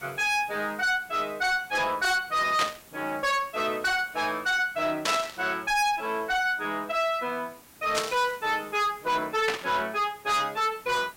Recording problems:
distorted audio; soft clipping, signal-to-distortion ratio 8 dB
background hiss; slope -3 dB per octave, SNR 23 dB
burst of static; 4 times, first at 2.5 s; peak +3 dB vs average level

